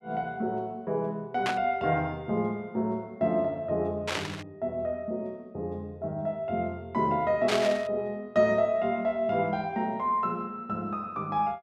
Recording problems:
static burst; at 1.5 s, at 4 s and at 7.5 s; peak +4 dB vs average level

